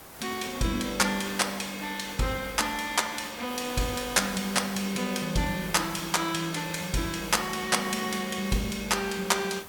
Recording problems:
background hiss; slope -4 dB per octave, SNR 14 dB

